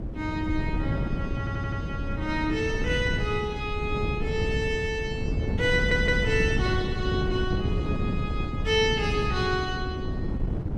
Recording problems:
wind on the microphone; below 200 Hz, SNR 2 dB
audio stuttering; at 1.5 s and at 6 s

